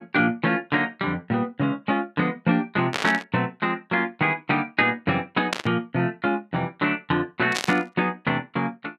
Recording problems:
static burst; at 3 s, at 5.5 s and at 7.5 s; peak +3 dB vs average level

